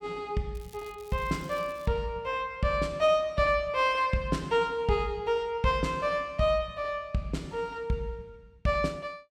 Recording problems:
crackle; from 0.5 to 2 s; loose cable, SNR 25 dB

